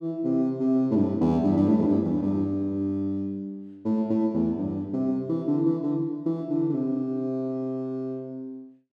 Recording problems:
none

